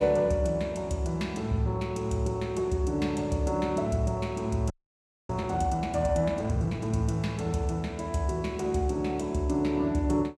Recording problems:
audio freezing; at 4.5 s for 0.5 s

